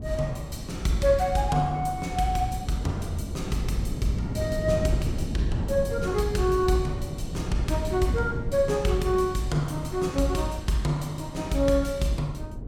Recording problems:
wind noise; below 190 Hz, SNR 7 dB

